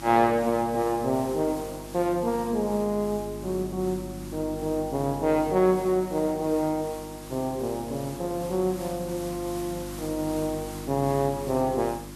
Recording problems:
electrical hum; 50 Hz, harmonics up to 350 Hz, SNR 13 dB
background hiss; SNR 16 dB

